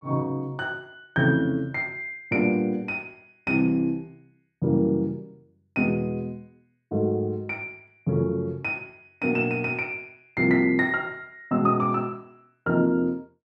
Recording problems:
none

